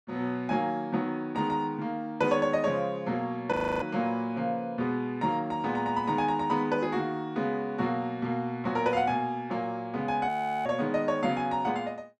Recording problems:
frozen audio; at 3.5 s and at 10 s

